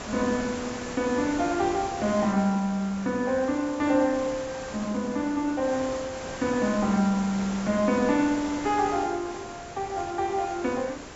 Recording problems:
treble missing; nothing above 8 kHz
hiss; slope -5 dB per octave, SNR 11 dB

